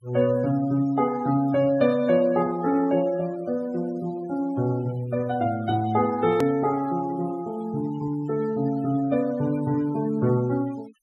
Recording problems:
denoising artefacts; signal-to-artefact ratio 22 dB
hard cut with a click; at 6.5 s

